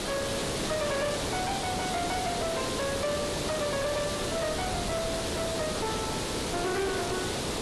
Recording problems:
codec artefacts; AAC, log-spectral distance 10 dB, nothing above 12 kHz
distorted audio; soft clipping, signal-to-distortion ratio 11 dB
hiss; SNR -1 dB
wind noise; below 320 Hz, SNR 12 dB

